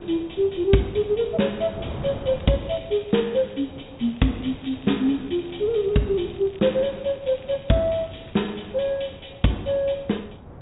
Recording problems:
treble missing; nothing above 3.8 kHz
codec artefacts; MP2, log-spectral distance 5 dB
wind on the microphone; below 510 Hz, SNR 16 dB
crackle; from 2 to 3.5 s and from 4 to 8.5 s; loose cable, SNR 27 dB

